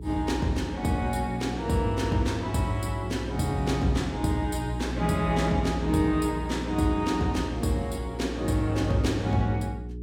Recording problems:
electrical hum; 60 Hz, harmonics up to 420 Hz, SNR 9 dB

